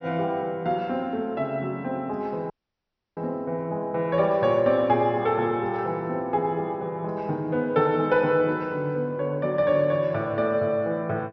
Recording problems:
treble cut off; nothing above 5.9 kHz
dropout; at 2.5 s for 0.5 s

